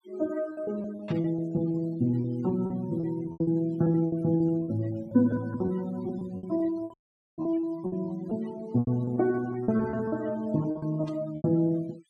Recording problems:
noise reduction artefacts; signal-to-artefact ratio 22 dB
packet loss; 15% of the sound replaced, filled with repeated pitch periods
burst of static; at 1 s and at 11 s; peak -12 dB vs average level
dropout; at 7 s

